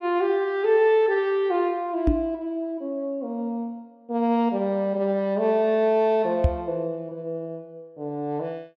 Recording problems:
microphone bump; at 2 s and at 6.5 s; peak +7 dB vs average level

